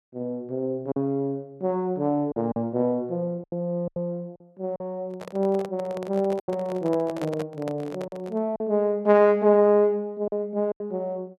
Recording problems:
packet loss; 6% of the sound replaced, filled with silence
handling noise; from 5 to 8.5 s; peak -5 dB vs average level

